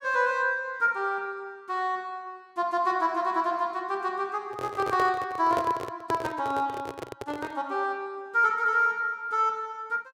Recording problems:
microphone handling noise; from 4.5 to 7.5 s; peak 0 dB vs average level

